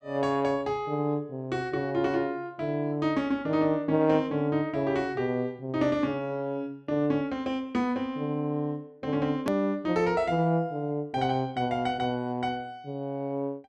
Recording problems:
click at an edit; at 9.5 s

